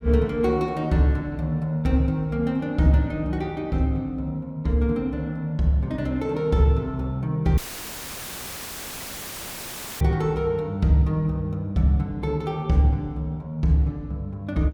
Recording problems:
audio cutting out; at 7.5 s for 2.5 s; filled with static

